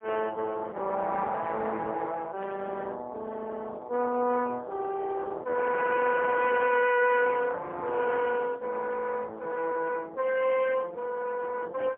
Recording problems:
telephone audio; 240 Hz to 3.1 kHz, AMR-NB, then MP3
static burst; at 2.5 s; peak -16 dB vs average level

